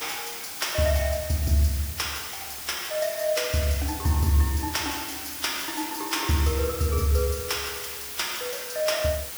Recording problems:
background hiss; slope 0 dB per octave, SNR 7 dB

